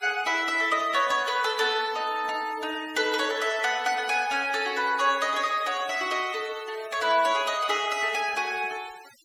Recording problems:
denoising artefacts; signal-to-artefact ratio 19 dB

